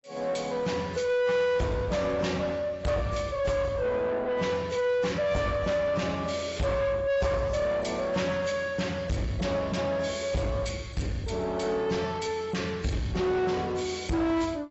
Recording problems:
lossy compression; AAC, log-spectral distance 3 dB, nothing above 7.8 kHz
distortion; soft clipping, signal-to-distortion ratio 6 dB

